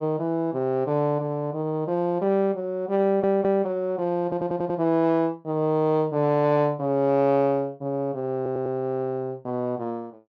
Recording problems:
audio stuttering; at 3 s, at 4 s and at 8.5 s

